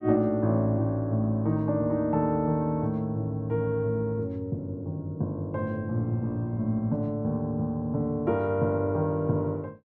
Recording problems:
none

